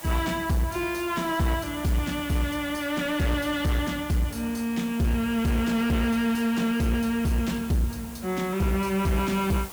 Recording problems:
distorted audio; soft clipping, signal-to-distortion ratio 10 dB
background hiss; SNR 16 dB

